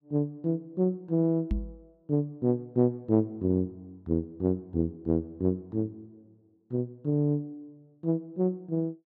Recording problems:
knock on the microphone; at 1.5 s; peak +3 dB vs average level

